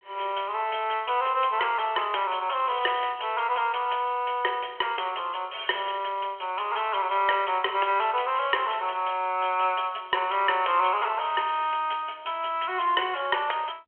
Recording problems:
phone line; 340 Hz to 3.3 kHz, G.726

